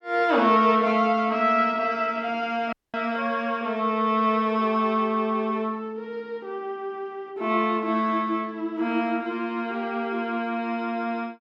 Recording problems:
dropout; at 2.5 s

